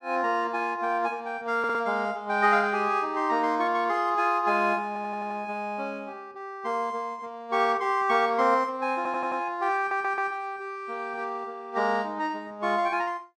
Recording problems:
audio stuttering; 4 times, first at 1.5 s

